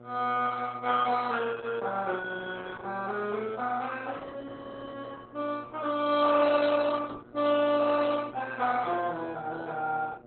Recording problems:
codec artefacts; Opus, log-spectral distance 4 dB, nothing above 3.9 kHz
mains hum; 60 Hz, harmonics up to 1.4 kHz, SNR 22 dB

